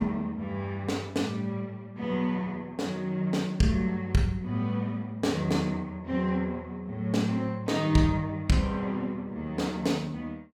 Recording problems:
none

